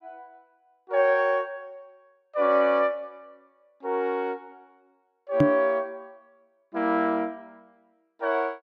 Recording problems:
knock on the microphone; at 5.5 s; peak +8 dB vs average level

